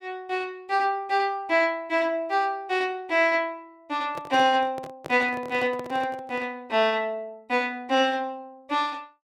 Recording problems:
handling noise; from 4 to 6.5 s; peak -7 dB vs average level

